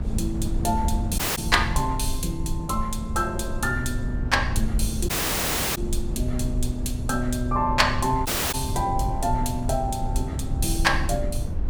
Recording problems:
low-frequency rumble; below 88 Hz, SNR 4 dB
wind noise; below 100 Hz, SNR 12 dB
audio cutting out; at 1 s, at 5 s for 0.5 s and at 8.5 s

